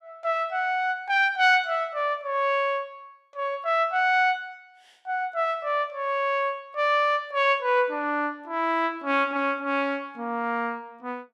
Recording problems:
none

